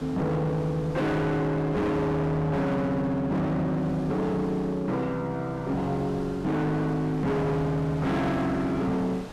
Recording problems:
distorted audio; hard clipping, signal-to-distortion ratio 7 dB
wind on the microphone; below 1 kHz, SNR 18 dB

